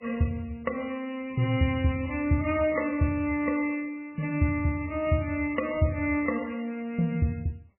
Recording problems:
codec artefacts; MP3, log-spectral distance 3 dB, nothing above 2.4 kHz

